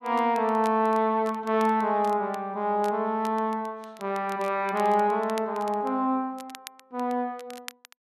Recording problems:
crackling; vinyl, SNR 22 dB

